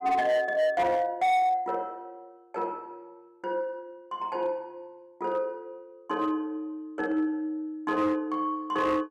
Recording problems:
distorted audio; hard clipping, signal-to-distortion ratio 12 dB

